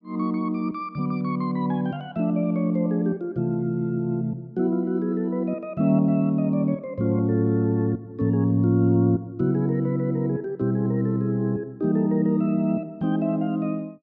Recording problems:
none

